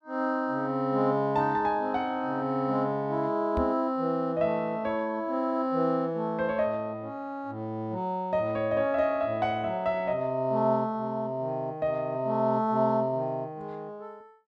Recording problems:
microphone bump; at 3.5 s; peak +1 dB vs average level

